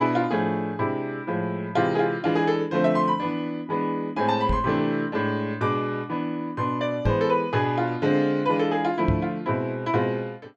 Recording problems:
knock on the microphone; at 4.5 s, at 7 s and at 9 s; peak +4 dB vs average level

